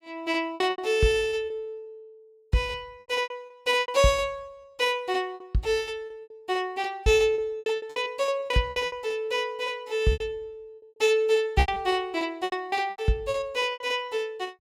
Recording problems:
lost packets; 13% of the sound replaced, filled with repeated pitch periods

